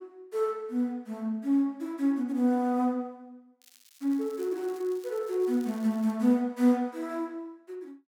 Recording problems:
crackle; from 3.5 to 6 s; loose cable, SNR 26 dB

